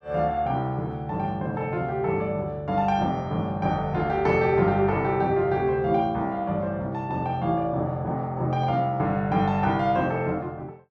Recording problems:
none

